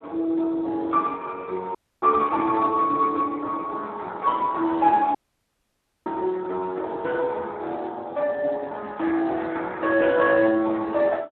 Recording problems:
phone line; 240 Hz to 3 kHz, Speex
audio cutting out; at 2 s and at 5 s for 1 s

